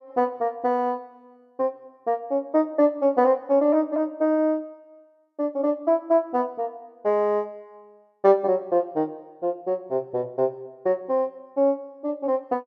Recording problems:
none

